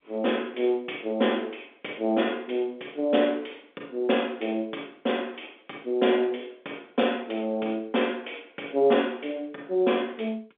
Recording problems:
phone line; 240 Hz to 3.6 kHz, G.711

